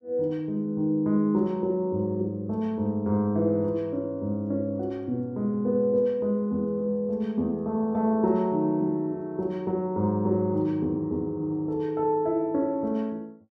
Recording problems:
none

